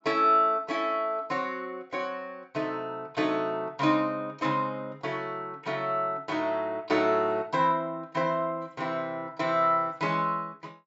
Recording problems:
low-pass filter; nothing above 8 kHz

